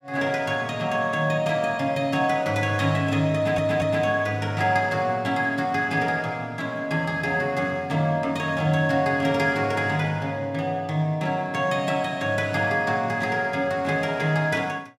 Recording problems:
audio stuttering; at 3.5 s

